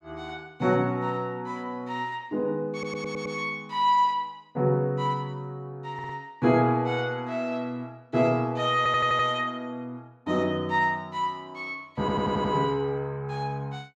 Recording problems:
audio stuttering; 4 times, first at 2.5 s

